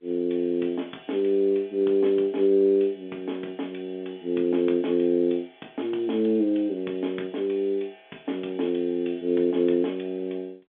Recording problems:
phone line; 240 Hz to 3.5 kHz, G.711

